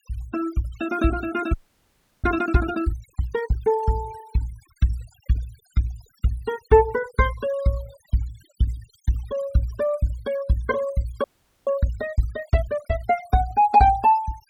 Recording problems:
noise reduction artefacts; signal-to-artefact ratio 19 dB
frozen audio; at 1.5 s for 0.5 s and at 11 s

